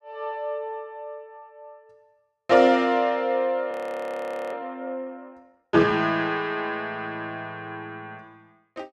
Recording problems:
audio freezing; at 3.5 s for 1 s

